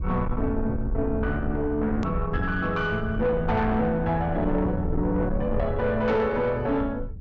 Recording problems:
treble missing; nothing above 8 kHz
distortion; soft clipping, signal-to-distortion ratio 10 dB
rumble; below 110 Hz, SNR 7 dB
hard cut with a click; at 2 s

